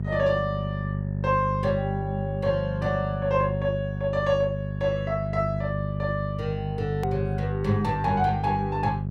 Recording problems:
hum; 50 Hz, harmonics up to 450 Hz, SNR 3 dB
hard cut with a click; at 7 s

